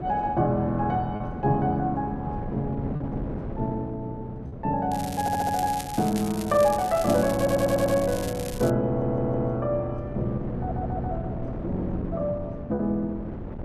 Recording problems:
wind noise; below 360 Hz, SNR 9 dB
packet loss; 1.4% of the sound replaced, filled with repeated pitch periods
crackle; from 5 to 8.5 s; loose cable, SNR 12 dB
audio stuttering; 4 times, first at 5 s

